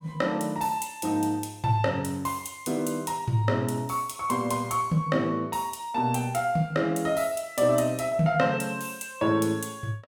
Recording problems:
none

